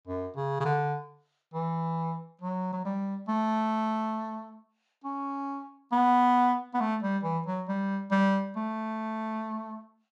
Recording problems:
none

